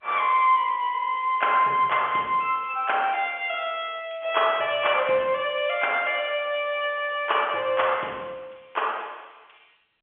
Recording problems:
phone line; 300 Hz to 3.4 kHz, G.711

